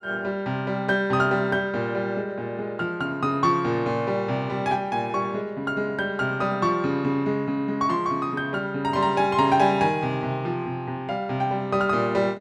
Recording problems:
none

